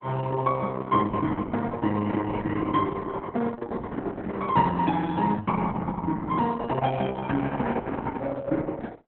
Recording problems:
codec artefacts; Opus, log-spectral distance 4 dB

